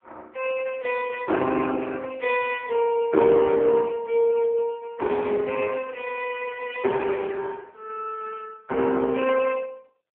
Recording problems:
phone line; 240 Hz to 3.4 kHz, AMR-NB

